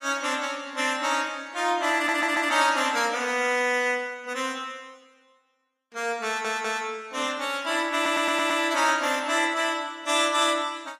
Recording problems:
lossy compression; AAC, log-spectral distance 3 dB, nothing above 14.3 kHz
audio stuttering; at 2 s, at 6.5 s and at 8 s

